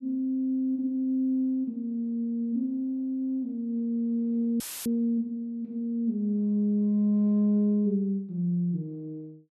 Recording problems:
audio cutting out; at 4.5 s; filled with static

